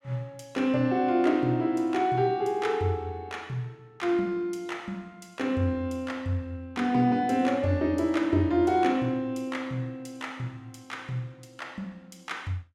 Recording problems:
none

